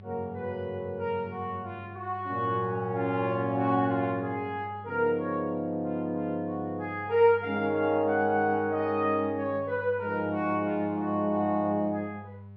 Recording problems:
electrical hum; 50 Hz, harmonics up to 600 Hz, SNR 17 dB

